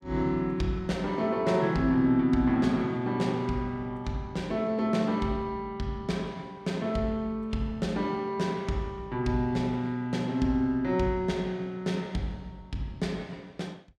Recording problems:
none

